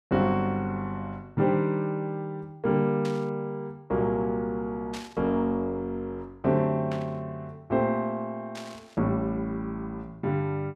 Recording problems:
burst of static; 4 times, first at 3 s; peak -8 dB vs average level

